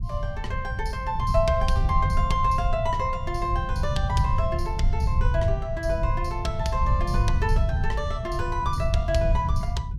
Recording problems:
rumble; below 100 Hz, SNR 0 dB

